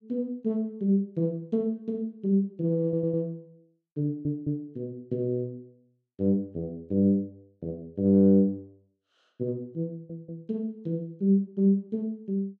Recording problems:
stutter; at 3 s, at 4 s and at 10 s

